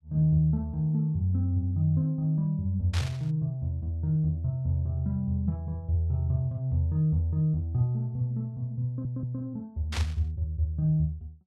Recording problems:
static burst; at 3 s and at 10 s; peak -2 dB vs average level
stutter; at 9 s

